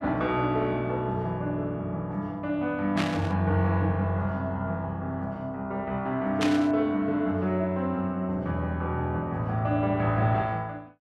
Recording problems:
burst of static; at 3 s and at 6.5 s; peak +2 dB vs average level

